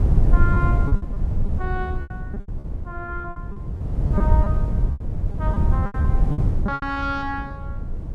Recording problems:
electrical hum; 60 Hz, harmonics up to 1.6 kHz, SNR 20 dB
wind on the microphone; below 100 Hz, SNR -7 dB
lost packets; 15% of the sound replaced, filled with repeated pitch periods

